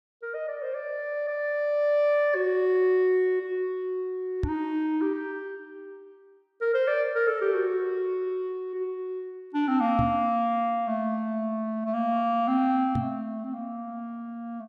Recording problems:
microphone thump; at 4.5 s, at 10 s and at 13 s; peak +3 dB vs average level

